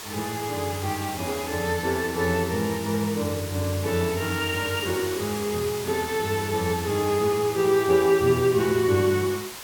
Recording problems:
background hiss; SNR 11 dB

